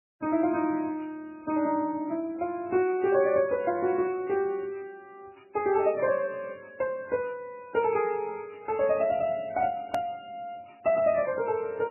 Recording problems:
lossy codec; MP3, log-spectral distance 2 dB, nothing above 13.1 kHz
edit click; at 10 s

